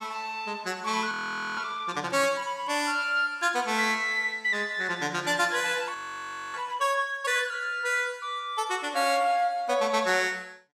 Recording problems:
audio freezing; at 1 s and at 6 s for 0.5 s

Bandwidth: 15.5 kHz